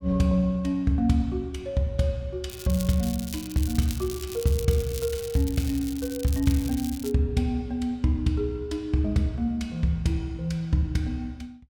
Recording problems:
crackle; from 2.5 to 7 s; loose cable, SNR 13 dB

